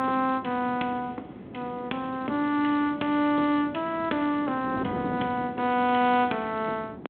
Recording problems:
phone line; 190 Hz to 3.7 kHz, G.726
wind on the microphone; below 410 Hz, SNR 13 dB

